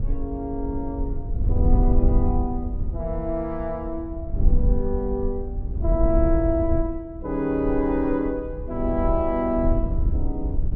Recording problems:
wind noise; below 70 Hz, SNR 1 dB

